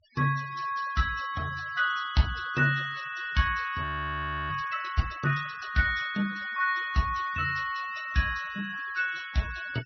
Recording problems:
low-pass filter; nothing above 6 kHz
denoising artefacts; signal-to-artefact ratio 18 dB
audio freezing; at 4 s for 0.5 s

